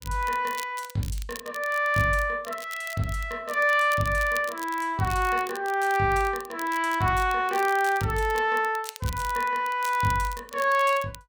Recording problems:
crackling; vinyl, SNR 17 dB

